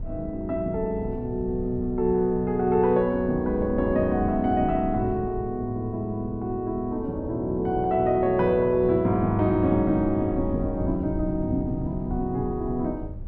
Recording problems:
wind on the microphone; below 110 Hz, SNR 12 dB

